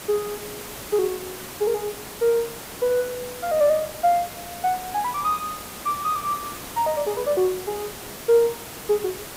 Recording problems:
background hiss; slope -3 dB per octave, SNR 11 dB

